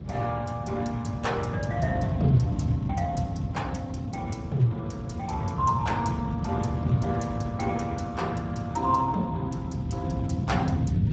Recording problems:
codec artefacts; Speex, log-spectral distance 3 dB, nothing above 7.6 kHz
rumble; below 190 Hz, SNR 2 dB
wind on the microphone; below 470 Hz, SNR 20 dB

